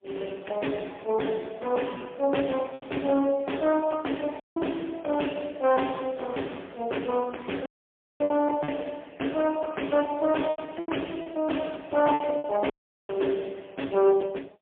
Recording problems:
phone line; 260 Hz to 3.4 kHz, AMR-NB, then MP3
distorted audio; hard clipping, uneven, signal-to-distortion ratio 12 dB
packet loss; 5% of the sound replaced, filled with repeated pitch periods
audio cutting out; at 4.5 s, at 7.5 s for 0.5 s and at 13 s

